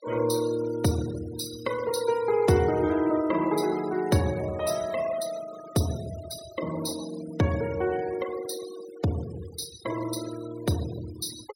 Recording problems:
noise reduction artefacts; signal-to-artefact ratio 16 dB

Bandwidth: 16 kHz